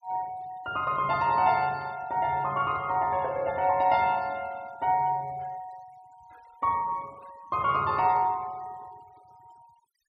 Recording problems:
noise reduction artefacts; signal-to-artefact ratio 27 dB

